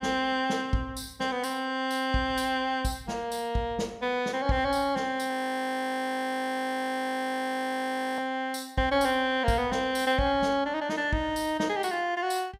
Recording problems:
audio freezing; at 5.5 s for 3 s

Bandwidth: 15.5 kHz